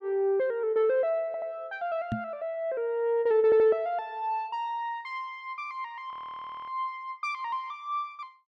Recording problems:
audio stuttering; at 1.5 s and at 3.5 s
knock on the microphone; at 2 s; peak +1 dB vs average level
audio freezing; at 6 s for 0.5 s

